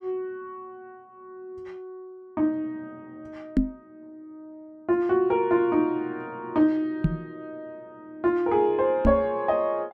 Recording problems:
microphone bump; at 3.5 s, at 7 s and at 9 s; peak +7 dB vs average level

